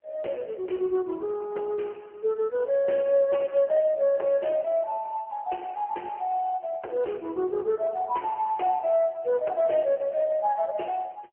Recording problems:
phone line; 280 Hz to 3.1 kHz, AMR-NB

